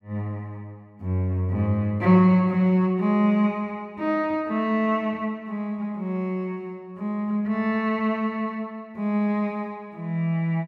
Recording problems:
none

